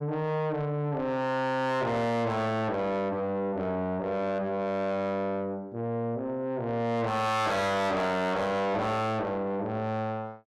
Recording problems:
distortion; soft clipping, signal-to-distortion ratio 7 dB

